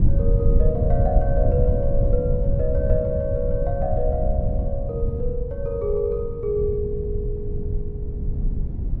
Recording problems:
low-frequency rumble; below 100 Hz, SNR -2 dB

